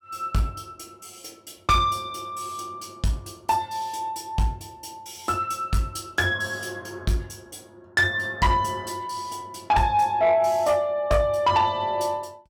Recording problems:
distorted audio; soft clipping, signal-to-distortion ratio 10 dB

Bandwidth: 17 kHz